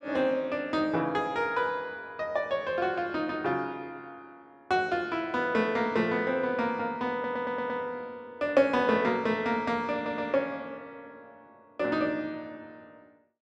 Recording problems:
audio stuttering; at 7 s and at 10 s

